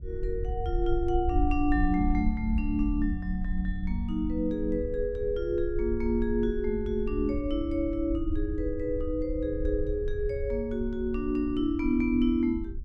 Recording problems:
low-frequency rumble; below 64 Hz, SNR 6 dB

